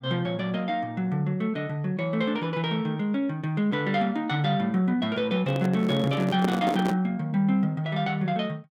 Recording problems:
microphone handling noise; from 5.5 to 7 s; peak +1 dB vs average level

